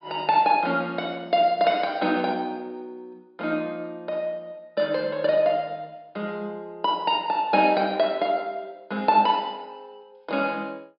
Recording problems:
treble missing; nothing above 5.5 kHz

